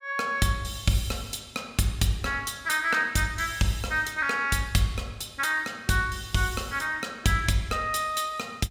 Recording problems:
none

